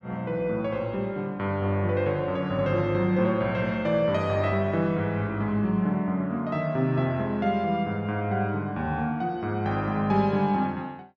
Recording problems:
none

